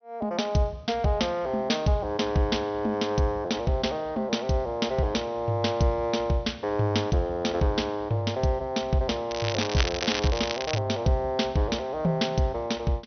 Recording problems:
low-pass filter; nothing above 6.1 kHz
crackle; from 9.5 to 11 s; loose cable, SNR 5 dB

